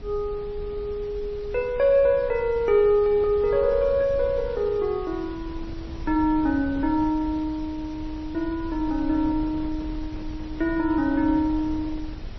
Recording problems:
lossy compression; MP3, then AAC, log-spectral distance 2 dB, nothing above 4.9 kHz
background hiss; slope -1 dB per octave, SNR 27 dB
wind on the microphone; below 88 Hz, SNR 15 dB

